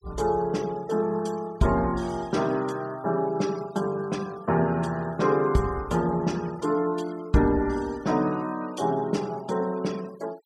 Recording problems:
denoising artefacts; signal-to-artefact ratio 22 dB

